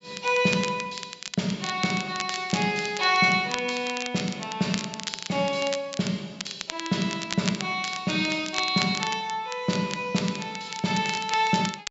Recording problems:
treble missing; nothing above 8 kHz
crackle; vinyl, SNR 10 dB

